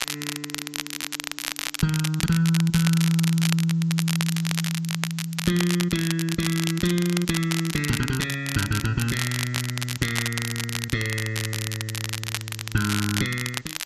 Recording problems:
lossy codec; G.722, log-spectral distance 2 dB
hiss; slope 0 dB per octave, SNR 27 dB
crackling; vinyl, SNR 5 dB

